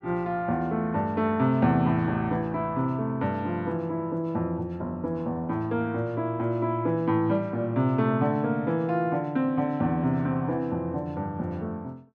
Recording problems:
none

